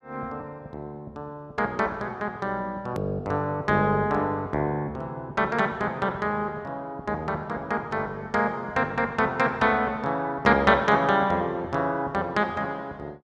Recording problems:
hard cut with a click; at 3 s

